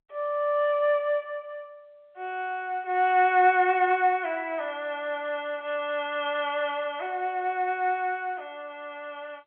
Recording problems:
telephone audio; 320 Hz to 3.3 kHz, G.711

